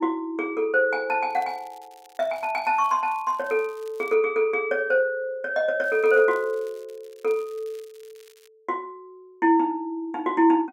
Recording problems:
crackling; from 1.5 to 4 s and from 6 to 8.5 s; loose cable, SNR 30 dB

